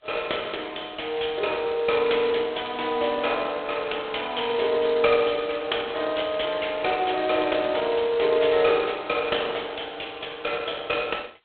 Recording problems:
telephone audio; 320 Hz to 3.6 kHz, G.726

